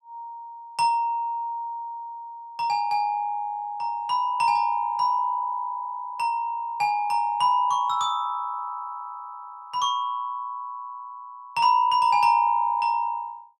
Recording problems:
none

